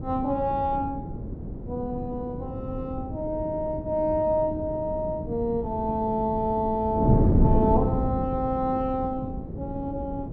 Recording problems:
wind noise; below 260 Hz, SNR 3 dB

